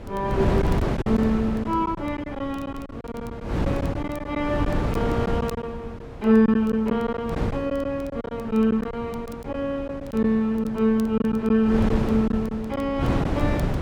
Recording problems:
wind on the microphone; below 390 Hz, SNR 5 dB
crackling; vinyl, SNR 29 dB
packet loss; 7% of the sound replaced, filled with silence

